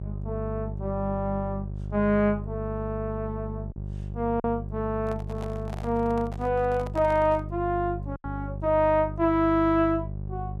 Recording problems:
electrical hum; 50 Hz, harmonics up to 600 Hz, SNR 8 dB
lost packets; 1.3% of the sound replaced, filled with silence
microphone handling noise; from 5 to 7.5 s; peak -9 dB vs average level

